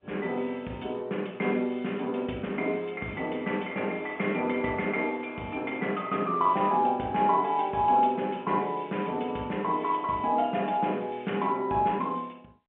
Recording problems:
telephone audio; 190 Hz to 3.4 kHz, G.711

